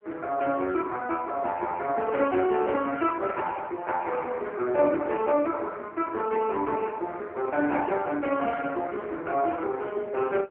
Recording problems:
phone line; 280 Hz to 3.1 kHz, AMR-NB

